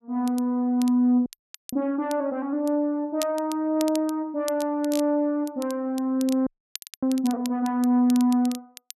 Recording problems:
crackling; vinyl, SNR 17 dB
frozen audio; at 1.5 s and at 6.5 s for 0.5 s

